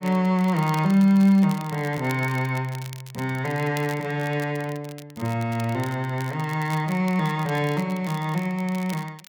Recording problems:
crackle; vinyl, SNR 20 dB

